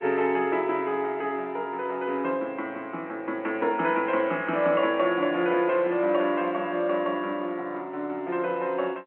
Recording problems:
phone line; 220 Hz to 3.2 kHz, G.711

